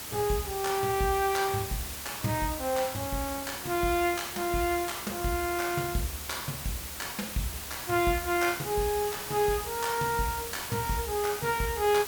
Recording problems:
hiss; slope -1 dB per octave, SNR 6 dB

